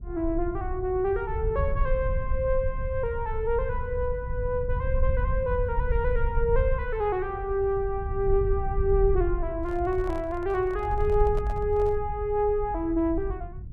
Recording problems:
rumble; below 68 Hz, SNR 5 dB
handling noise; from 9.5 to 12 s; peak -10 dB vs average level

